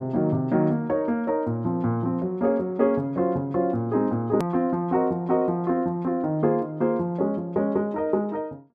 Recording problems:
click at an edit; at 4.5 s

